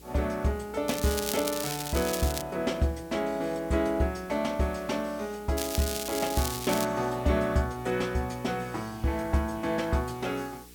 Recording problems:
hum; 60 Hz, harmonics up to 480 Hz, SNR 22 dB
background hiss; slope +2 dB per octave, SNR 24 dB
crackle; from 1 to 2.5 s and from 5.5 to 7 s; loose cable, SNR 5 dB

